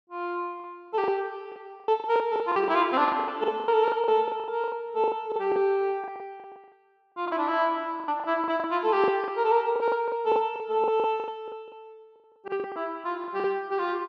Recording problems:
lost packets; 17% of the sound replaced, filled with the last packet

